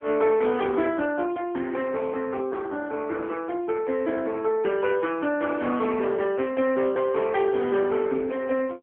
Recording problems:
phone line; 220 Hz to 3.4 kHz, AMR-NB

